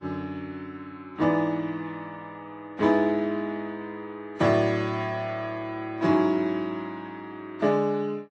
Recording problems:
lossy codec; Vorbis, then AAC, log-spectral distance 2 dB, nothing above 10.7 kHz

